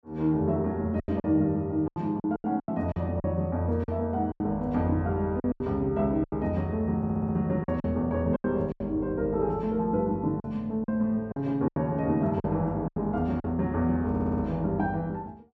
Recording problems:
packet loss; 9% of the sound replaced, filled with silence
stutter; at 7 s and at 14 s

